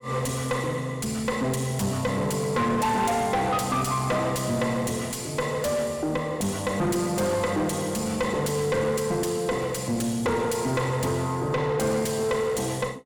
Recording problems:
distortion; soft clipping, signal-to-distortion ratio 6 dB

